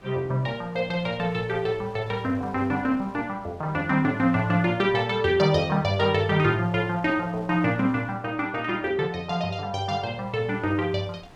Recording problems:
wind on the microphone; below 1.2 kHz, SNR 24 dB

